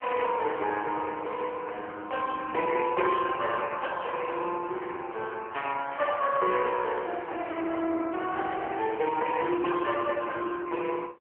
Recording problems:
telephone audio; 300 Hz to 3.2 kHz, AMR-NB

